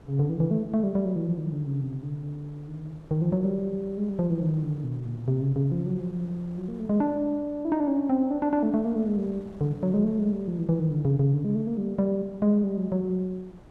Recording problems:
wind on the microphone; below 500 Hz, SNR 24 dB

